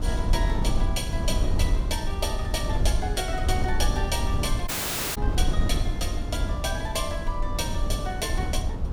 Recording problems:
electrical hum; 60 Hz, harmonics up to 300 Hz, SNR 15 dB
wind noise; below 84 Hz, SNR -3 dB
dropout; at 4.5 s

